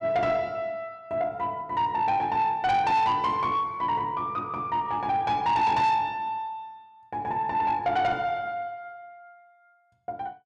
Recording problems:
distortion; soft clipping, signal-to-distortion ratio 11 dB

